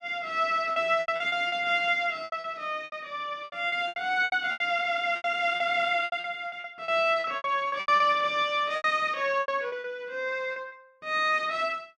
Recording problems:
lost packets; 15% of the sound replaced, filled with repeated pitch periods

